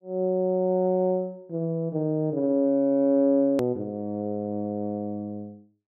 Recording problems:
edit click; at 3.5 s

